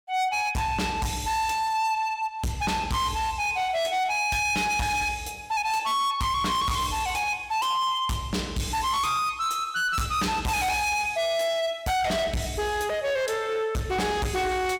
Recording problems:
distorted audio; hard clipping, signal-to-distortion ratio 8 dB

